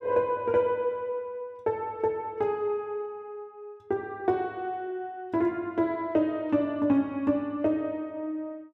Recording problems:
none

